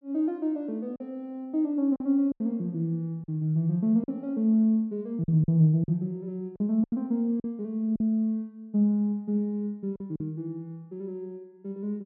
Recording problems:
lost packets; 5% of the sound replaced, filled with silence

